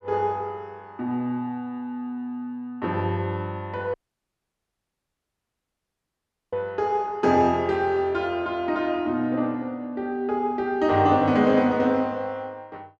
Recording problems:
audio cutting out; at 4 s for 2.5 s

